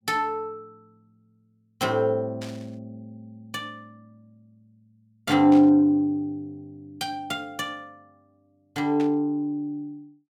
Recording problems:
burst of static; at 2.5 s, at 5.5 s and at 9 s; peak -12 dB vs average level

